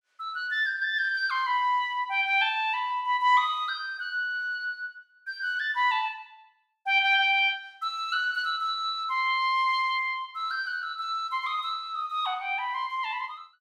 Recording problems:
none

